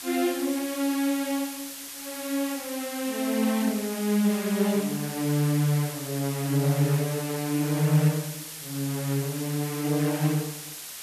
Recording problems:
hiss; slope +2 dB per octave, SNR 10 dB

